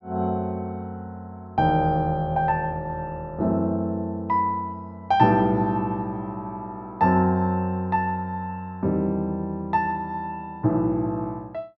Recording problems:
none

